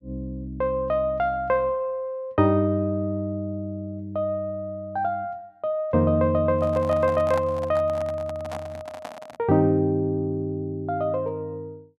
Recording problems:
handling noise; from 6.5 to 9.5 s; peak -5 dB vs average level

